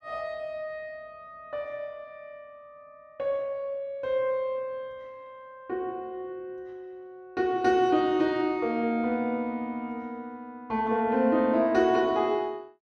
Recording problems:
none

